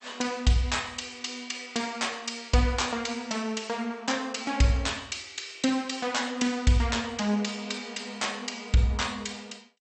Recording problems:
lossy codec; MP2, log-spectral distance 6 dB, nothing above 8 kHz

